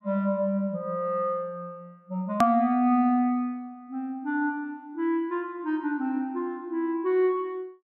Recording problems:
click at an edit; at 2.5 s

